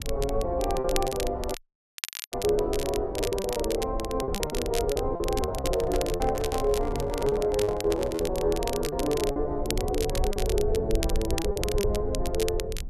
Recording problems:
low-frequency rumble; below 70 Hz, SNR 8 dB
crackling; vinyl, SNR 9 dB
packet loss; 8% of the sound replaced, filled with repeated pitch periods
audio cutting out; at 1.5 s for 1 s
microphone handling noise; from 5.5 to 8.5 s; peak 0 dB vs average level

